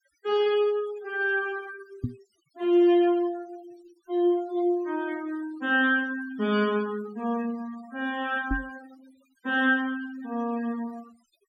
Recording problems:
denoising artefacts; signal-to-artefact ratio 21 dB
microphone bump; at 2 s and at 8.5 s; peak +1 dB vs average level

